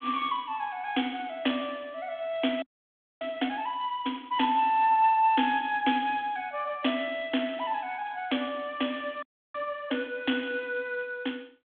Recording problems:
phone line; 220 Hz to 3.5 kHz, G.726
frozen audio; at 2.5 s for 0.5 s and at 9 s

